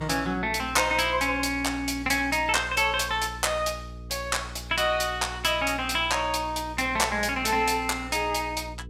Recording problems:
hum; 60 Hz, harmonics up to 480 Hz, SNR 16 dB

